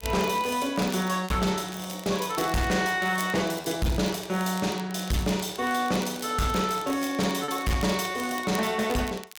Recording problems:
distorted audio; hard clipping, signal-to-distortion ratio 10 dB
crackle; vinyl, SNR 17 dB
lost packets; 1.5% of the sound replaced, filled with repeated pitch periods

